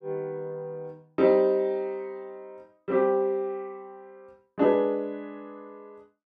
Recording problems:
none

